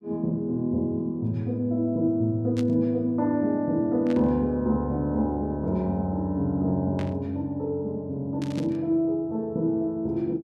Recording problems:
burst of static; 4 times, first at 2.5 s; peak -10 dB vs average level

